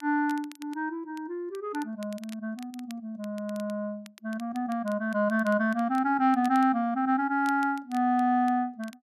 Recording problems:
crackle; vinyl, SNR 24 dB

